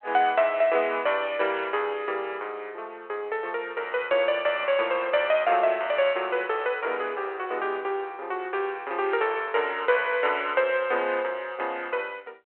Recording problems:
phone line; 340 Hz to 3.2 kHz, G.726

